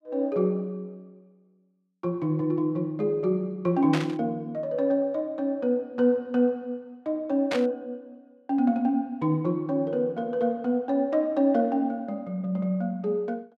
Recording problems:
static burst; at 4 s and at 7.5 s; peak 0 dB vs average level

